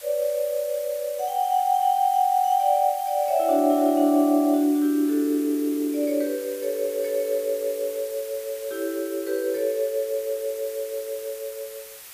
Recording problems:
hiss; slope +2 dB per octave, SNR 16 dB

